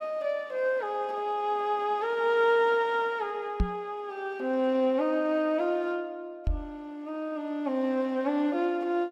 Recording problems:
knock on the microphone; at 3.5 s and at 6.5 s; peak +4 dB vs average level

